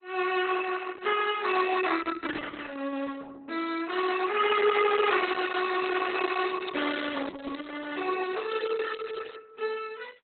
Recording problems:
lossy compression; AAC, then Opus, log-spectral distance 9 dB, nothing above 4 kHz
crackling; from 5 to 9.5 s; loose cable, SNR 20 dB

